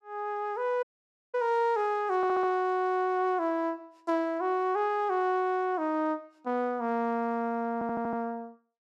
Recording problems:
dropout; at 1 s for 0.5 s
stutter; at 2 s and at 7.5 s

